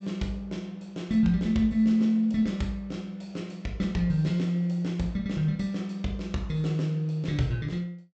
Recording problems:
treble missing; nothing above 8 kHz

